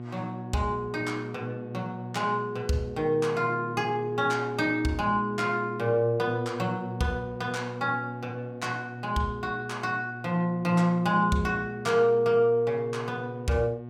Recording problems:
hum; 60 Hz, harmonics up to 1.1 kHz, SNR 11 dB

